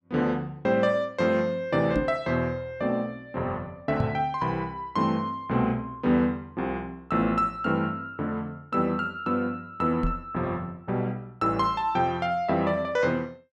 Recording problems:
knock on the microphone; at 2 s, at 4 s and at 10 s; peak +3 dB vs average level

